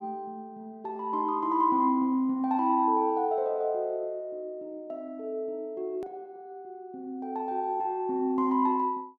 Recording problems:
click at an edit; at 6 s

